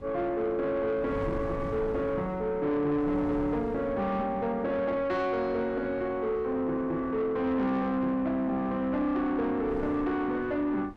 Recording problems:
distorted audio; soft clipping, signal-to-distortion ratio 11 dB
wind on the microphone; below 300 Hz, SNR 15 dB

